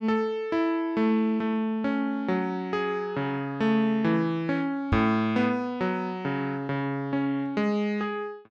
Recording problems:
knock on the microphone; at 5 s; peak +3 dB vs average level

